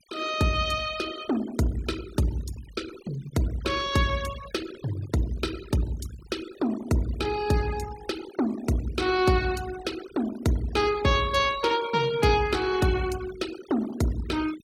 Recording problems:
denoising artefacts; signal-to-artefact ratio 16 dB

